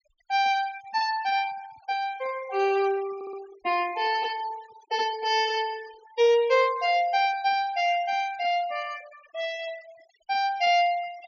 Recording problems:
treble missing; nothing above 7 kHz
noise reduction artefacts; signal-to-artefact ratio 21 dB
audio stuttering; at 3 s

